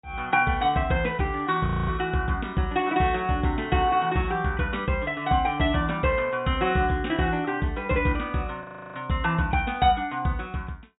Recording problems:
treble cut off; nothing above 4 kHz
frozen audio; at 1.5 s and at 8.5 s

